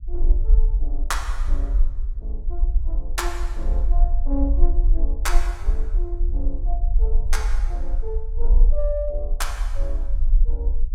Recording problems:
rumble; below 44 Hz, strongest tone 24 Hz, SNR -8 dB

